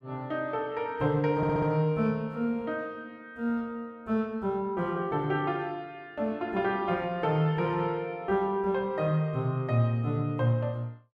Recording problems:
stutter; at 1.5 s

